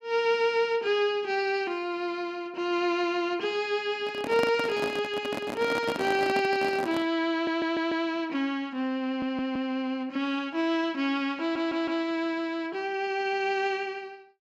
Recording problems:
handling noise; from 4 to 7 s; peak +1 dB vs average level
audio stuttering; at 7.5 s, at 9 s and at 11 s

